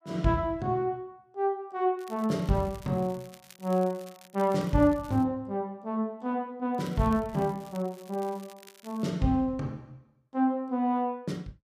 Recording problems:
crackling; from 2 to 5 s and from 7 to 9 s; loose cable, SNR 24 dB

